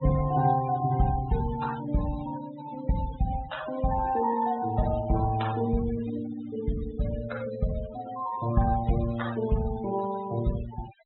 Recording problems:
treble missing; nothing above 4 kHz
denoising artefacts; signal-to-artefact ratio 14 dB

